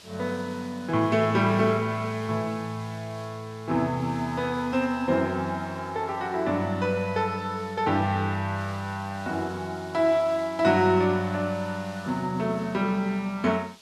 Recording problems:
hiss; SNR 22 dB

